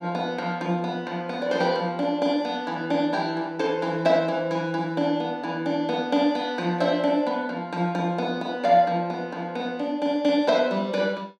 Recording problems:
none

